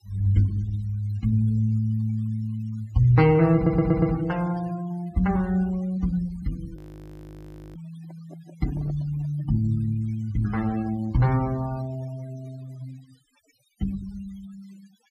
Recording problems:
noise reduction artefacts; signal-to-artefact ratio 22 dB
audio stuttering; at 3.5 s
audio freezing; at 7 s for 1 s
microphone handling noise; from 8 to 9.5 s; peak -14 dB vs average level

